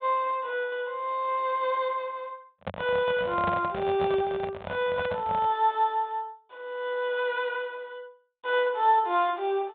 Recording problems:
low-pass filter; nothing above 4 kHz
handling noise; from 2.5 to 5.5 s; peak 0 dB vs average level

